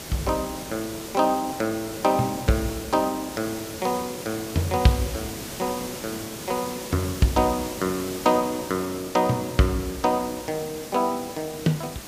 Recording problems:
background hiss; slope -3 dB per octave, SNR 10 dB

